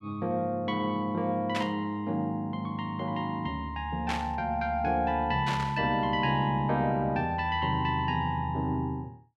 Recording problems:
static burst; at 1.5 s, at 4 s and at 5.5 s; peak 0 dB vs average level

